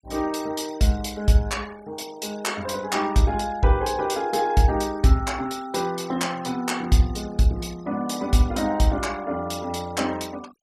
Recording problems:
denoising artefacts; signal-to-artefact ratio 21 dB

